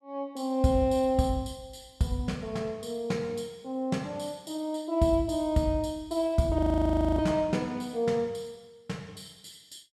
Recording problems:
frozen audio; at 6.5 s for 0.5 s

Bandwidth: 14 kHz